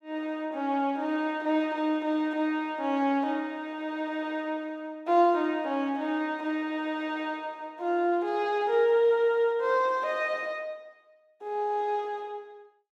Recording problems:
none

